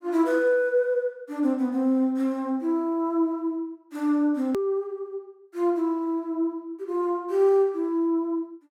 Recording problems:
edit click; at 4.5 s

